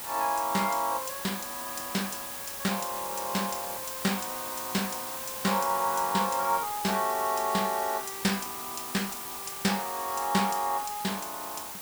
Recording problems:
hiss; SNR 5 dB

